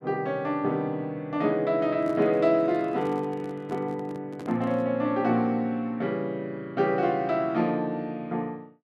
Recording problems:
handling noise; from 2 to 5 s; peak -9 dB vs average level

